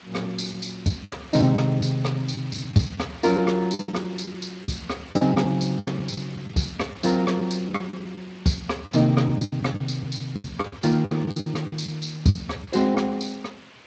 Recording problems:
lossy codec; Speex, log-spectral distance 7 dB
background hiss; SNR 21 dB
lost packets; 13% of the sound replaced, filled with the last packet

